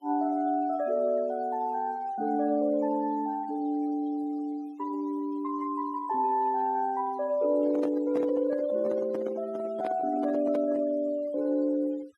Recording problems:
noise reduction artefacts; signal-to-artefact ratio 24 dB
handling noise; from 7.5 to 11 s; peak -3 dB vs average level

